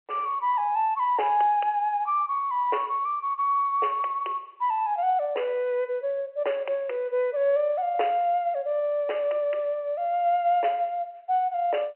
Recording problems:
telephone audio; 340 Hz to 3.1 kHz, G.711

